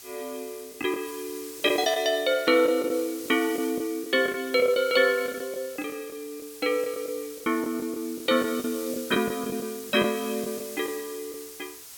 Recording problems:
background hiss; slope +1 dB per octave, SNR 14 dB
lost packets; 9% of the sound replaced, filled with the last packet

